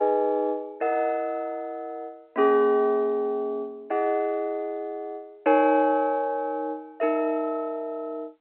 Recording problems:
telephone audio; 240 Hz to 3.3 kHz, G.711

